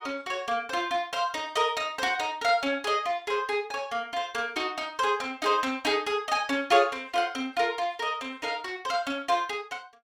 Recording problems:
none

